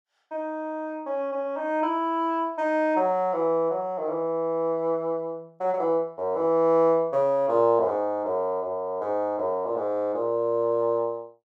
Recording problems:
none

